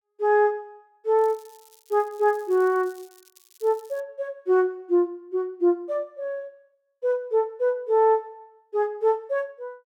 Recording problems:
crackling; from 1 to 4 s; loose cable, SNR 28 dB

